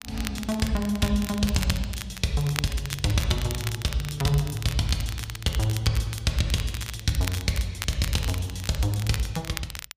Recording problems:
crackling; vinyl, SNR 10 dB

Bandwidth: 15 kHz